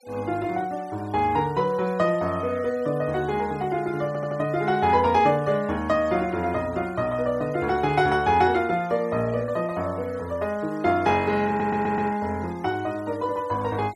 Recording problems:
noise reduction artefacts; signal-to-artefact ratio 24 dB
audio stuttering; at 4 s and at 11 s

